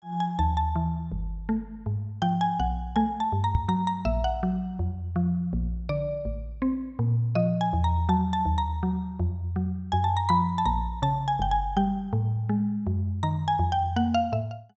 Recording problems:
microphone thump; at 3.5 s; peak +7 dB vs average level

